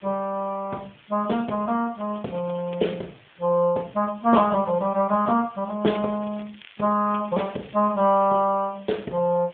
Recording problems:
telephone audio; 220 Hz to 3.6 kHz, AMR-NB
hiss; SNR 28 dB
crackle; at 2 s and from 6 to 8.5 s; loose cable, SNR 25 dB

